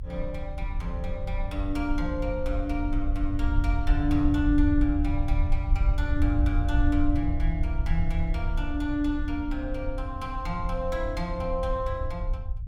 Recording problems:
low-frequency rumble; below 72 Hz, SNR 0 dB

